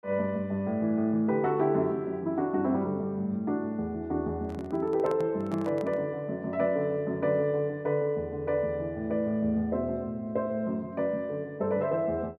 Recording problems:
microphone handling noise; from 4.5 to 6 s; peak -9 dB vs average level

